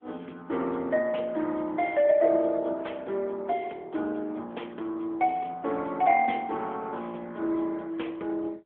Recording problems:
phone line; 240 Hz to 3.3 kHz, AMR-NB

